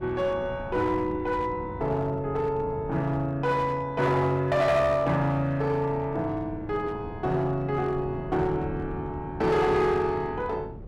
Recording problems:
distorted audio; hard clipping, uneven, signal-to-distortion ratio 11 dB
wind on the microphone; below 280 Hz, SNR 15 dB

